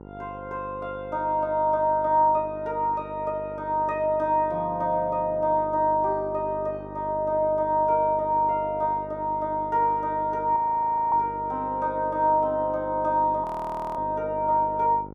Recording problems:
hum; 50 Hz, harmonics up to 1.4 kHz, SNR 17 dB
audio freezing; at 11 s for 0.5 s and at 13 s for 0.5 s

